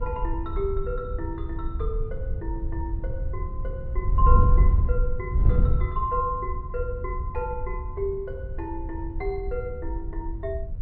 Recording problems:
low-pass filter; nothing above 5 kHz
wind noise; below 74 Hz, SNR -4 dB

